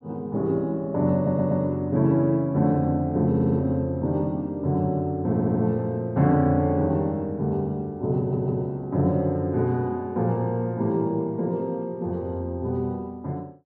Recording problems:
stutter; 4 times, first at 1 s

